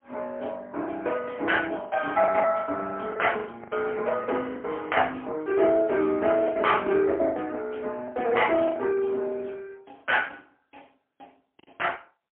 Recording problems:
telephone audio; 240 Hz to 3.1 kHz, AMR-NB, then MP3
lost packets; 11% of the sound replaced, filled with the last packet

